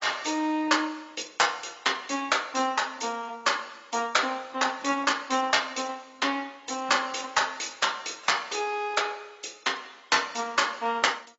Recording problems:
low-pass filter; nothing above 7.6 kHz
lossy compression; AAC, log-spectral distance 5 dB

